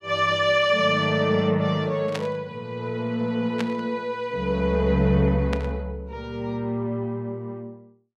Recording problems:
burst of static; at 2 s, at 3.5 s and at 5.5 s; peak -3 dB vs average level

